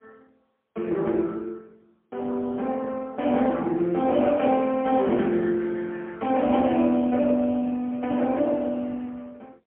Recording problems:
phone line; 190 Hz to 3.3 kHz, AMR-NB, then MP3

